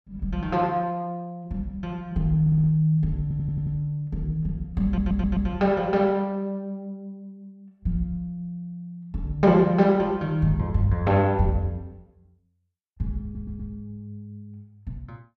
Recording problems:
audio stuttering; 4 times, first at 2.5 s

